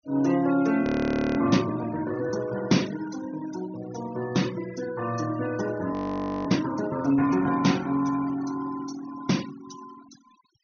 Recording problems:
low-pass filter; nothing above 6.3 kHz
denoising artefacts; signal-to-artefact ratio 16 dB
frozen audio; at 1 s for 0.5 s and at 6 s for 0.5 s

